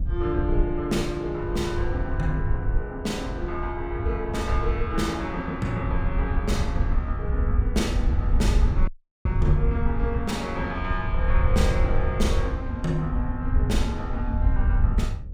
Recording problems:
electrical hum; 60 Hz, harmonics up to 540 Hz, SNR 26 dB
wind noise; below 78 Hz, SNR -2 dB
audio cutting out; at 9 s

